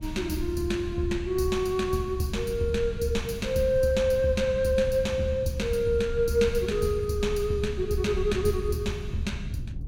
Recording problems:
low-frequency rumble; below 110 Hz, SNR 10 dB

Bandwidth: 17 kHz